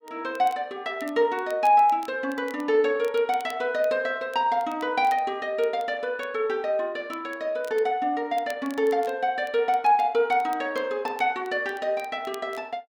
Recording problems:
crackling; vinyl, SNR 26 dB

